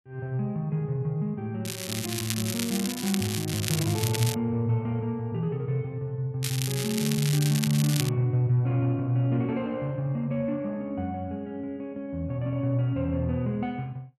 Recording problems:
crackle; from 1.5 to 4.5 s and from 6.5 to 8 s; loose cable, SNR 4 dB

